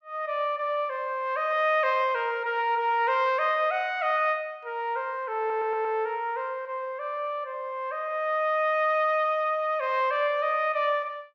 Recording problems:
audio stuttering; at 5.5 s

